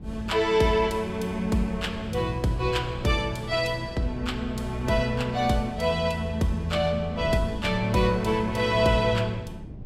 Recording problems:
wind on the microphone; below 190 Hz, SNR 15 dB

